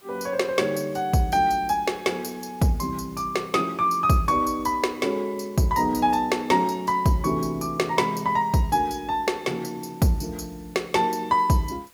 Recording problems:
hiss; slope -1 dB per octave, SNR 29 dB

